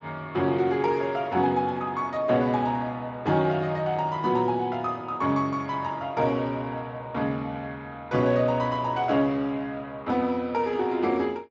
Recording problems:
lossy compression; Speex, log-spectral distance 2 dB, nothing above 7.3 kHz

